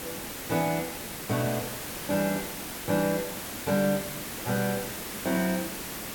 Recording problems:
background hiss; slope -3 dB per octave, SNR 5 dB

